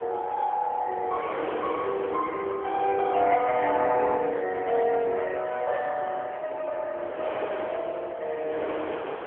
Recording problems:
phone line; 320 Hz to 3.6 kHz, AMR-NB
wind on the microphone; below 1.1 kHz, SNR 11 dB

